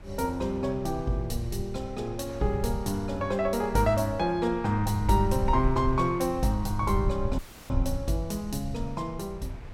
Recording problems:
low-frequency rumble; below 94 Hz, SNR 8 dB
wind on the microphone; below 1.6 kHz, SNR 24 dB
dropout; at 7.5 s

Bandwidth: 16.5 kHz